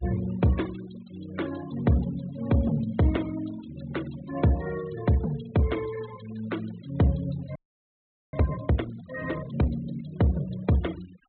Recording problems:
treble missing; nothing above 4 kHz
noise reduction artefacts; signal-to-artefact ratio 19 dB
frozen audio; at 7.5 s for 1 s

